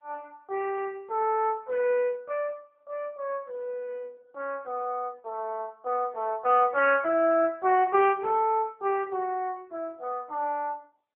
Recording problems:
phone line; 280 Hz to 3.1 kHz, AMR-NB

